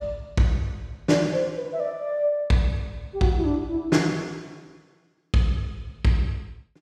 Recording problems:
none

